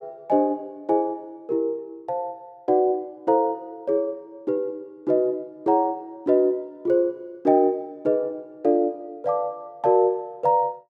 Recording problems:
none

